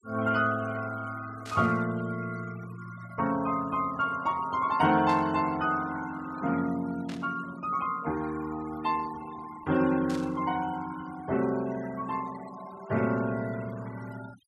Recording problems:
denoising artefacts; signal-to-artefact ratio 18 dB
static burst; 4 times, first at 1.5 s; peak -10 dB vs average level

